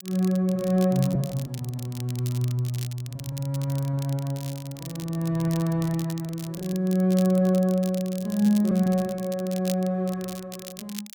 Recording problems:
crackling; vinyl, SNR 17 dB
packet loss; 11% of the sound replaced, filled with repeated pitch periods

